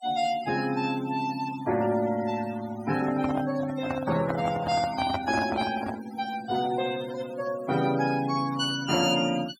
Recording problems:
denoising artefacts; signal-to-artefact ratio 14 dB
microphone handling noise; from 3 to 6 s; peak +1 dB vs average level

